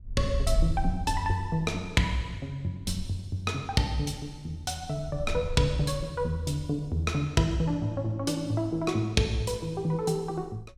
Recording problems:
wind on the microphone; below 68 Hz, SNR 7 dB

